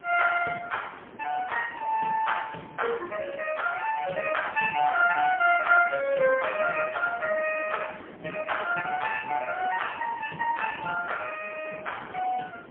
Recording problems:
phone line; 240 Hz to 3.2 kHz, AMR-NB, then MP3
wind noise; below 770 Hz, SNR 19 dB

